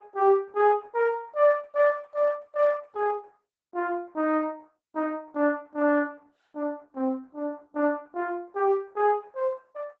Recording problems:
lossy codec; Opus, log-spectral distance 2 dB

